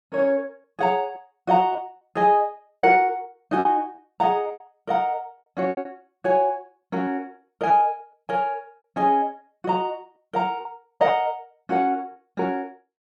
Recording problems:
lost packets; 6% of the sound replaced, filled with repeated pitch periods

